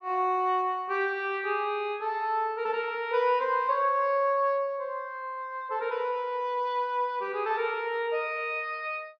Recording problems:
none

